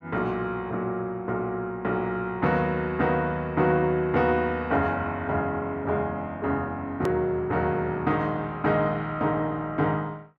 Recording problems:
hard cut with a click; at 7 s

